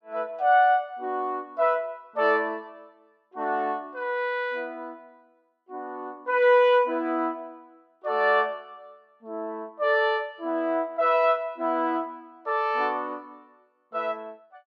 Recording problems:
none

